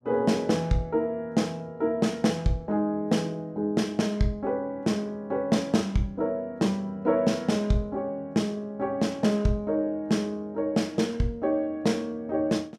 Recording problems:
none

